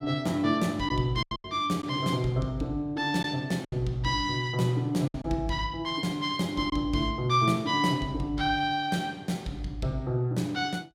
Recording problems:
packet loss; 3% of the sound replaced, filled with silence

